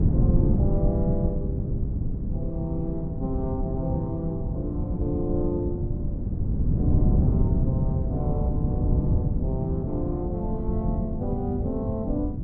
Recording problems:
wind on the microphone; below 170 Hz, SNR -5 dB

